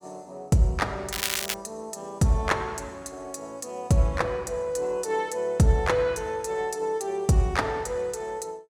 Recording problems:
crackling; at 1 s; loose cable, SNR 2 dB

